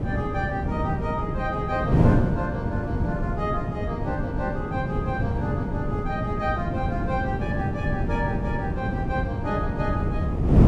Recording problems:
wind on the microphone; below 250 Hz, SNR -4 dB

